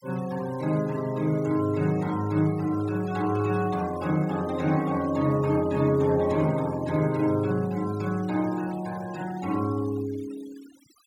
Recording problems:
noise reduction artefacts; signal-to-artefact ratio 21 dB

